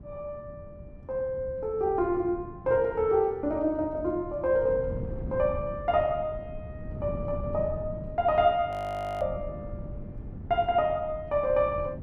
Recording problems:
wind noise; below 190 Hz, SNR 13 dB
frozen audio; at 8.5 s for 0.5 s

